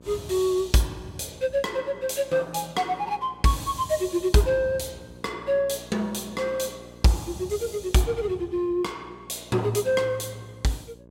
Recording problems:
electrical hum; 60 Hz, harmonics up to 1.1 kHz, SNR 23 dB

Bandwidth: 16 kHz